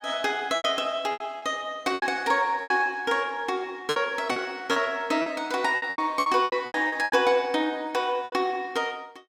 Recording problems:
lost packets; 12% of the sound replaced, filled with repeated pitch periods

